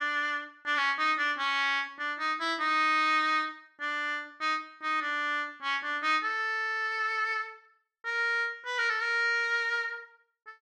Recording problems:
none

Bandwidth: 13 kHz